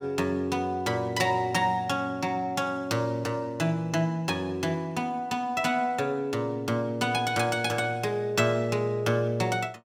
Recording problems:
none

